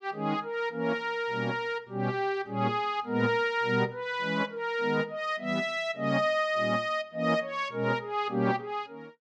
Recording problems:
none

